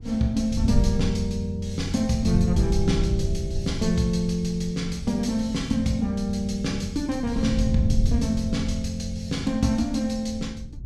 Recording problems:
wind noise; below 110 Hz, SNR 5 dB

